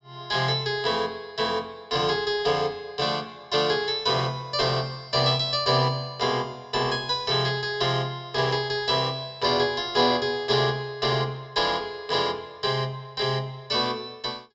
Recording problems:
low-pass filter; nothing above 8 kHz

